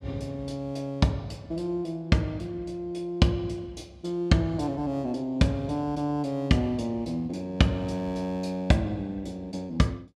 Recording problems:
none

